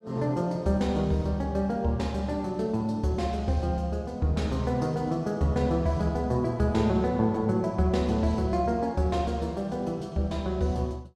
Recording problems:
none

